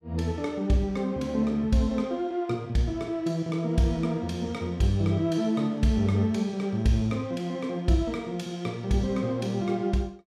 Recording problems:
none

